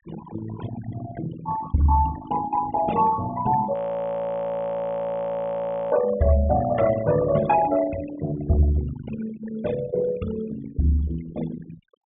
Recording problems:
low-pass filter; nothing above 3.5 kHz
denoising artefacts; signal-to-artefact ratio 12 dB
frozen audio; at 3.5 s for 2 s

